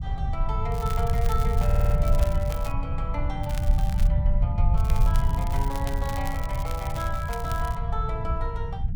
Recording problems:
rumble; below 86 Hz, SNR -6 dB
crackle; from 0.5 to 2.5 s, at 3.5 s and from 5 to 8 s; loose cable, SNR 10 dB
stutter; at 1.5 s

